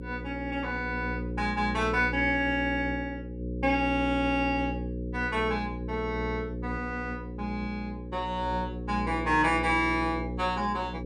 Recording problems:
hum; 60 Hz, harmonics up to 540 Hz, SNR 7 dB

